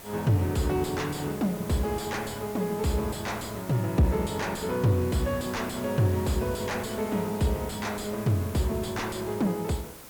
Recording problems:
distortion; soft clipping, signal-to-distortion ratio 6 dB
hiss; slope -6 dB per octave, SNR 12 dB

